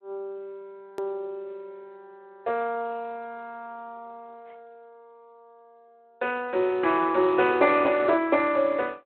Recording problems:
telephone audio; 300 Hz to 3.6 kHz, Speex
edit click; at 1 s

